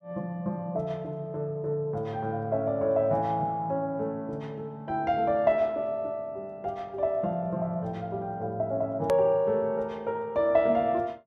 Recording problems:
edit click; at 9 s

